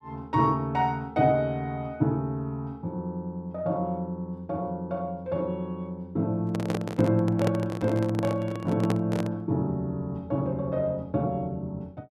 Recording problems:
microphone handling noise; from 6.5 to 9.5 s; peak +2 dB vs average level

